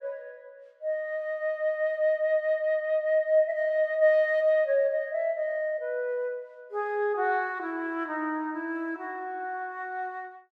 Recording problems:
none

